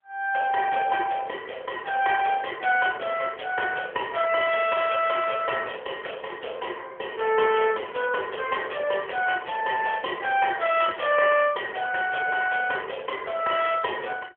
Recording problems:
phone line; 340 Hz to 3.1 kHz, AMR-NB

